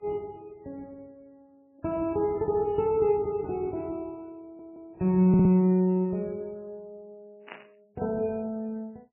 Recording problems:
lossy compression; MP3, then AAC, log-spectral distance 2 dB, nothing above 2.4 kHz
audio stuttering; at 4.5 s and at 5.5 s
burst of static; at 7.5 s; peak -10 dB vs average level

